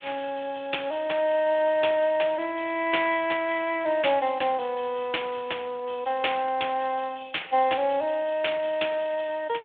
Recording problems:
telephone audio; 320 Hz to 3.6 kHz, Speex

